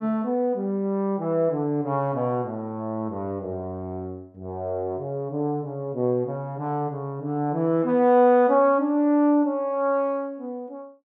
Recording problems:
none

